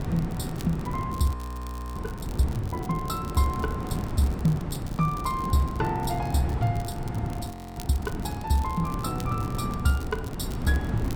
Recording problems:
wind on the microphone; below 270 Hz, SNR 4 dB
crackling; vinyl, SNR 19 dB
frozen audio; at 1.5 s for 0.5 s and at 7.5 s

